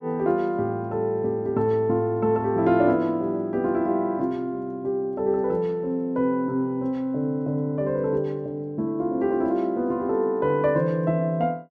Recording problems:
none

